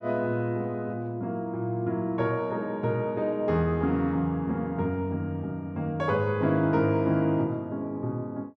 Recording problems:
none

